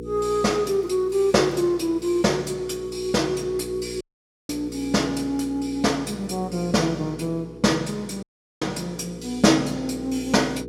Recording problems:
electrical hum; 60 Hz, harmonics up to 480 Hz, SNR 14 dB
audio cutting out; at 4 s and at 8 s

